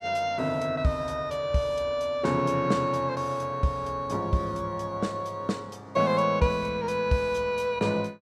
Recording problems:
none

